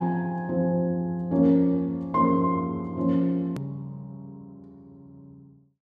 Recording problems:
click at an edit; at 3.5 s

